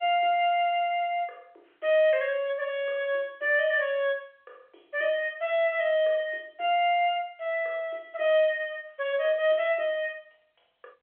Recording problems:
phone line; 300 Hz to 3.3 kHz, G.711

